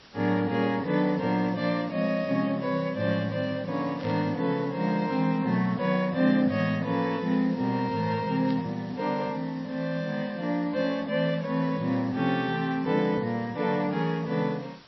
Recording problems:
lossy compression; MP3, log-spectral distance 3 dB, nothing above 5.5 kHz
hiss; slope -2 dB per octave, SNR 24 dB
burst of static; at 4 s and at 8.5 s; peak -12 dB vs average level

